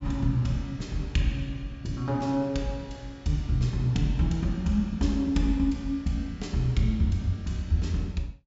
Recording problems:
low-pass filter; nothing above 8 kHz

